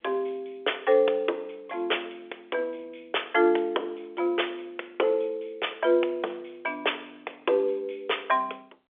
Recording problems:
telephone audio; 370 Hz to 3.5 kHz, G.711

